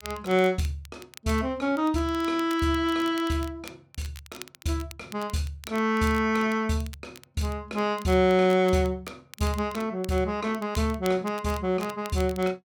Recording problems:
crackle; vinyl, SNR 20 dB

